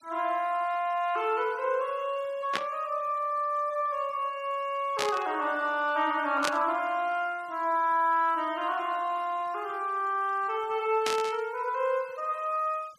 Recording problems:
denoising artefacts; signal-to-artefact ratio 26 dB
static burst; 4 times, first at 2.5 s; peak +3 dB vs average level

